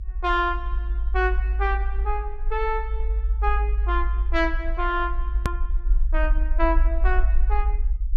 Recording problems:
rumble; below 52 Hz, SNR -1 dB
hard cut with a click; at 5.5 s

